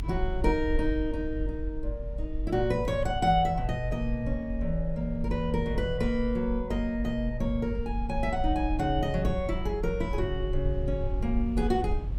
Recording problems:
rumble; below 58 Hz, SNR 5 dB

